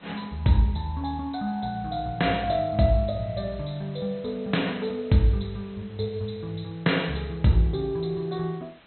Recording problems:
treble missing; nothing above 4.1 kHz
lossy codec; MP2, log-spectral distance 5 dB
hiss; SNR 26 dB

